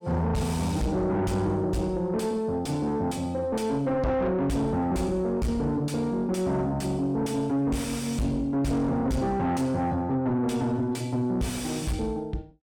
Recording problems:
distortion; soft clipping, signal-to-distortion ratio 6 dB

